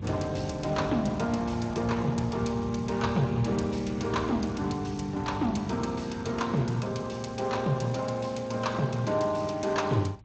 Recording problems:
codec artefacts; Speex, log-spectral distance 6 dB, nothing above 7.3 kHz
rumble; below 160 Hz, SNR 11 dB

